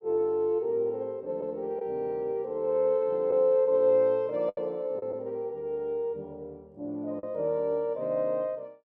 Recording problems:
packet loss; 2% of the sound replaced, filled with the last packet

